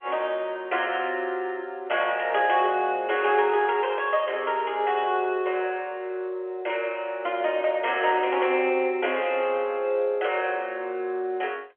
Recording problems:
telephone audio; 280 Hz to 3.3 kHz, G.711

